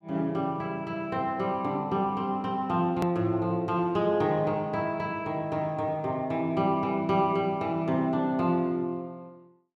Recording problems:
click at an edit; at 3 s

